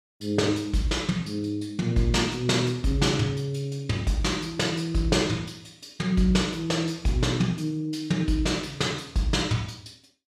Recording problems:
none

